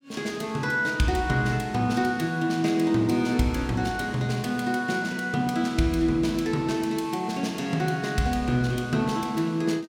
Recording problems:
none

